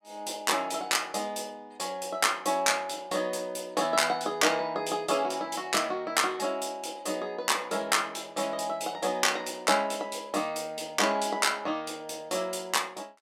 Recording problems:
none

